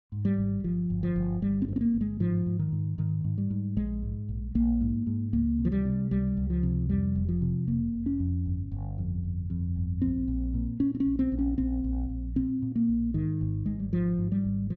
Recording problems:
none

